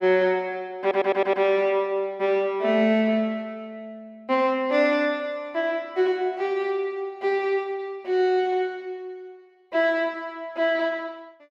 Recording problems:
stutter; at 1 s

